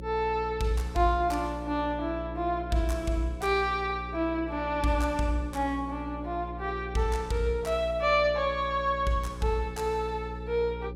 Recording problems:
electrical hum; 60 Hz, harmonics up to 540 Hz, SNR 11 dB

